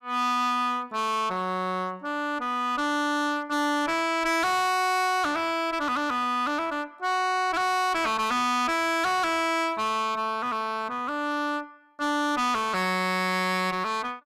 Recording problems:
distortion; hard clipping, uneven, signal-to-distortion ratio 5 dB

